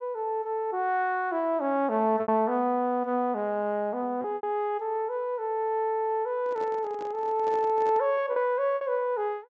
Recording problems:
treble cut off; nothing above 8 kHz
packet loss; 3% of the sound replaced, filled with repeated pitch periods
microphone handling noise; from 6.5 to 8 s; peak -10 dB vs average level

